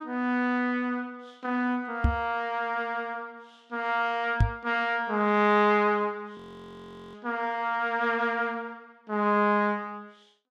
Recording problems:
microphone bump; at 2 s and at 4.5 s; peak +7 dB vs average level
frozen audio; at 6.5 s for 1 s

